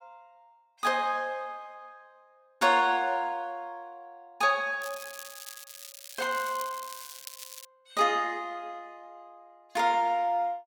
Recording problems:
crackle; from 5 to 7.5 s; loose cable, SNR 14 dB

